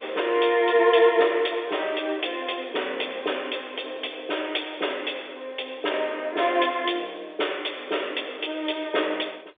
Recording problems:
telephone audio; 320 Hz to 3.6 kHz, G.711

